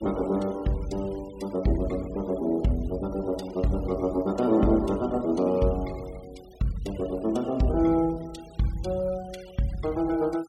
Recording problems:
noise reduction artefacts; signal-to-artefact ratio 23 dB

